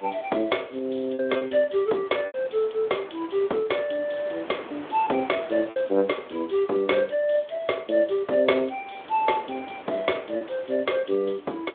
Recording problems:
phone line; 260 Hz to 3.6 kHz, Speex
wind noise; below 1.5 kHz, SNR 18 dB
lost packets; 3% of the sound replaced, filled with repeated pitch periods

